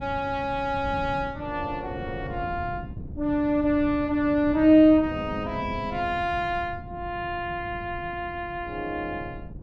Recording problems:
wind noise; below 180 Hz, SNR 14 dB

